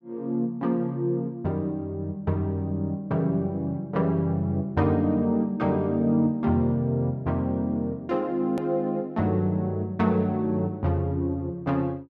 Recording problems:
click at an edit; at 8.5 s

